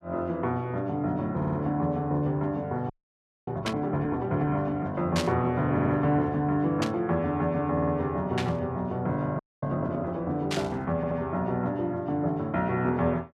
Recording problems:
stutter; 4 times, first at 1.5 s
audio freezing; at 3 s for 0.5 s and at 9.5 s
burst of static; 5 times, first at 3.5 s; peak +1 dB vs average level

